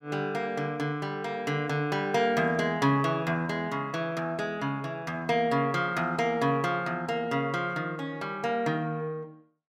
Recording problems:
none

